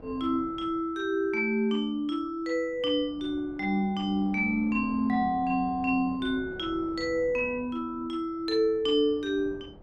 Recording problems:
wind on the microphone; below 440 Hz, SNR 20 dB

